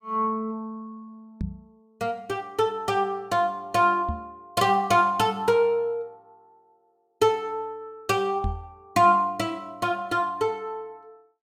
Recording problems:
microphone bump; at 1.5 s, at 4 s and at 8.5 s; peak -1 dB vs average level

